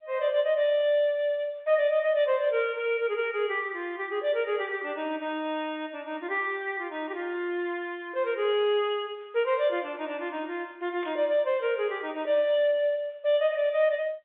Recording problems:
phone line; 320 Hz to 3.6 kHz, G.711
burst of static; at 11 s; peak -14 dB vs average level

